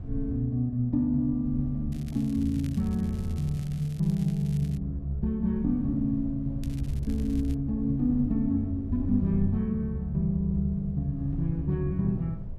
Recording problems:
hum; 60 Hz, harmonics up to 660 Hz, SNR 30 dB
low-frequency rumble; below 98 Hz, SNR 13 dB
crackle; from 2 to 5 s and at 6.5 s; loose cable, SNR 25 dB

